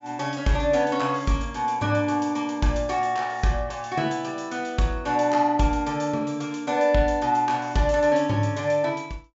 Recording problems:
low-pass filter; nothing above 8 kHz

